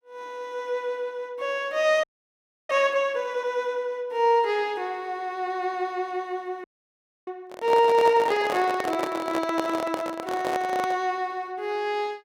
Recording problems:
frozen audio; at 2 s for 0.5 s and at 6.5 s for 0.5 s
microphone handling noise; from 7.5 to 11 s; peak +1 dB vs average level

